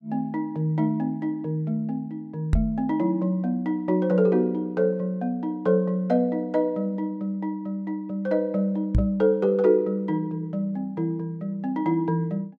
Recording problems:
knock on the microphone; at 2.5 s and at 9 s; peak +7 dB vs average level

